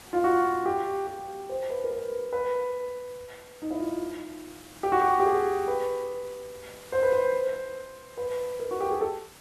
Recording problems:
background hiss; slope -2 dB per octave, SNR 21 dB

